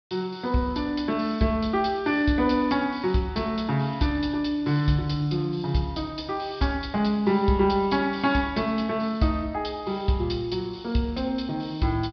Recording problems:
treble cut off; nothing above 5.5 kHz

